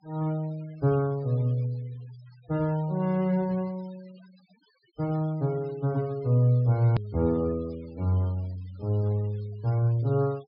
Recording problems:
low-pass filter; nothing above 5.5 kHz
denoising artefacts; signal-to-artefact ratio 27 dB
edit click; at 7 s

